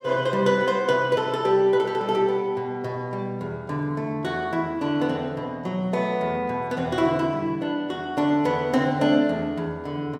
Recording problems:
none

